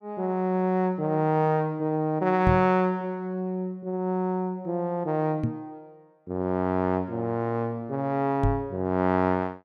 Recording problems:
knock on the microphone; at 2.5 s, at 5.5 s and at 8.5 s; peak +5 dB vs average level

